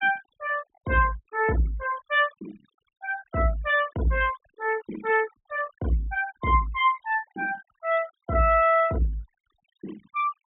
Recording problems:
treble cut off; nothing above 4 kHz
noise reduction artefacts; signal-to-artefact ratio 19 dB

